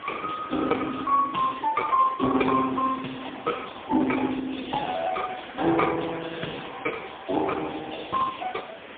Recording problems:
phone line; 190 Hz to 3.6 kHz, AMR-NB, then MP3
background hiss; SNR 15 dB

